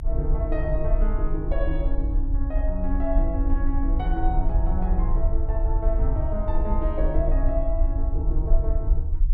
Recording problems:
rumble; below 52 Hz, strongest tone 30 Hz, SNR -5 dB

